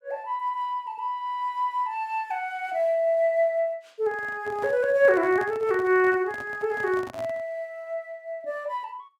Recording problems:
handling noise; from 4 to 7.5 s; peak -9 dB vs average level

